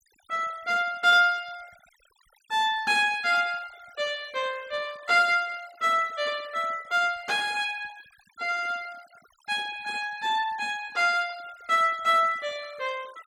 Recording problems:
noise reduction artefacts; signal-to-artefact ratio 24 dB

